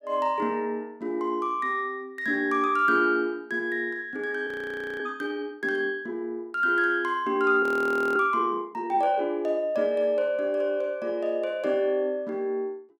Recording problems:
audio freezing; at 4.5 s for 0.5 s and at 7.5 s for 0.5 s

